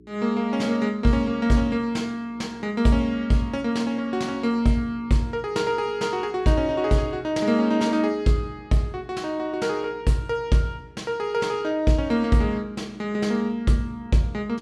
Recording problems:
electrical hum; 60 Hz, harmonics up to 420 Hz, SNR 26 dB

